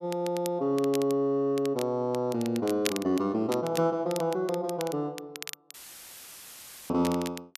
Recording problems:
crackle; vinyl, SNR 13 dB
dropout; at 5.5 s for 1 s; filled with static

